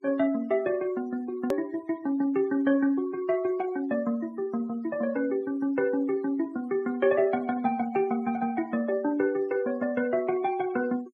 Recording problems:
denoising artefacts; signal-to-artefact ratio 24 dB
click at an edit; at 1.5 s

